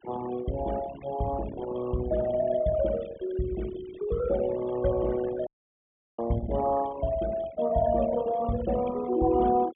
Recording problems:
treble missing; nothing above 3.5 kHz
denoising artefacts; signal-to-artefact ratio 14 dB
audio cutting out; at 5.5 s for 0.5 s

